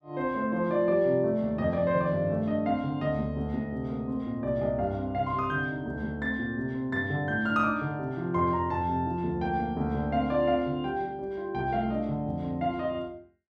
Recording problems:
none

